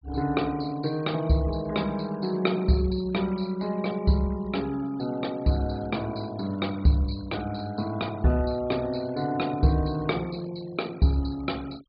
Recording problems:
low-pass filter; nothing above 4.8 kHz
noise reduction artefacts; signal-to-artefact ratio 22 dB

